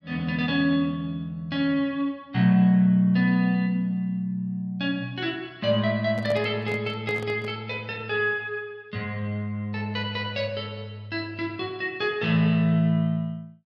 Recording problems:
microphone handling noise; from 6 to 7.5 s; peak -6 dB vs average level

